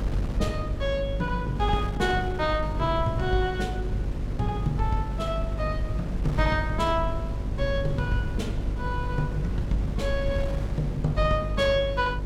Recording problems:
hum; 50 Hz, harmonics up to 600 Hz, SNR 5 dB
low-frequency rumble; below 100 Hz, SNR 9 dB
wind noise; below 250 Hz, SNR 9 dB

